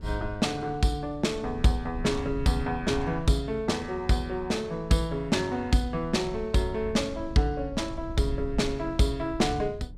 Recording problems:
rumble; below 96 Hz, SNR 14 dB

